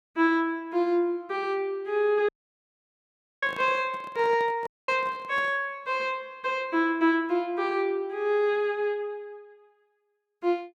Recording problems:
audio cutting out; at 2.5 s for 1 s and at 4.5 s
microphone handling noise; from 3.5 to 5.5 s; peak -12 dB vs average level

